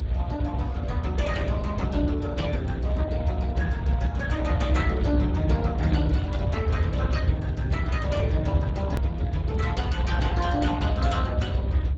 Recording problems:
lossy codec; Speex, log-spectral distance 2 dB, nothing above 7.3 kHz
hum; 60 Hz, harmonics up to 660 Hz, SNR 12 dB
low-frequency rumble; below 100 Hz, strongest tone 64 Hz, SNR -2 dB
edit click; at 9 s

